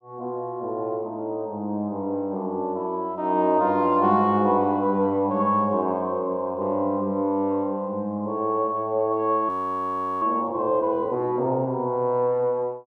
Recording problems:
audio freezing; at 9.5 s for 0.5 s

